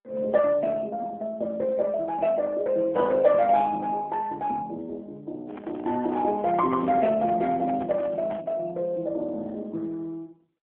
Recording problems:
phone line; 220 Hz to 3.3 kHz, AMR-NB
microphone handling noise; from 5.5 to 8.5 s; peak -10 dB vs average level

